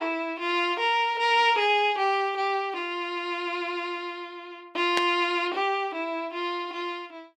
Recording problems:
static burst; at 5 s; peak +1 dB vs average level

